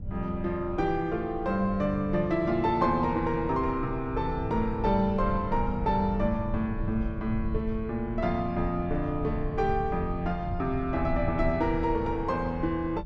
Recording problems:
rumble; below 110 Hz, SNR 9 dB

